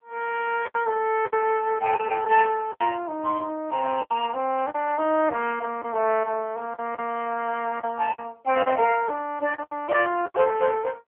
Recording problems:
telephone audio; 320 Hz to 3.1 kHz, AMR-NB
lost packets; 7% of the sound replaced, filled with the last packet

